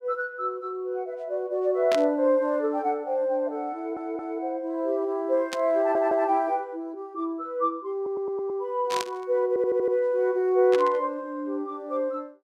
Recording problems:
burst of static; 4 times, first at 2 s; peak -1 dB vs average level
audio stuttering; 4 times, first at 4 s

